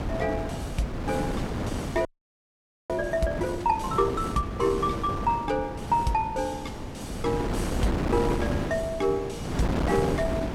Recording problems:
wind on the microphone; below 520 Hz, SNR 3 dB
audio freezing; at 2 s for 1 s

